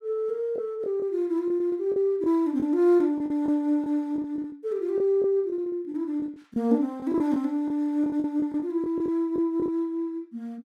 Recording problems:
packet loss; 9% of the sound replaced, filled with the last packet

